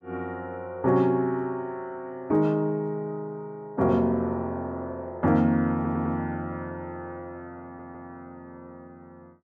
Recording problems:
audio stuttering; at 6 s and at 7.5 s

